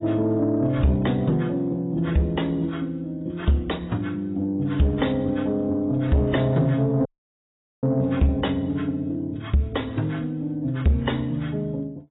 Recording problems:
lossy compression; AAC, then AAC, log-spectral distance 2 dB, nothing above 3.8 kHz
distortion; soft clipping, signal-to-distortion ratio 10 dB
audio cutting out; at 7 s for 1 s

